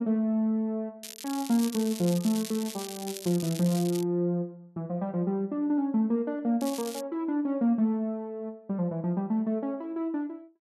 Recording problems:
crackle; from 1 to 4 s and at 6.5 s; loose cable, SNR 11 dB

